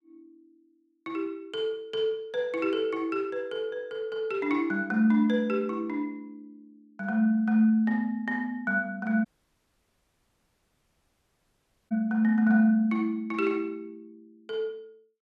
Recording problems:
dropout; at 9.5 s for 2.5 s

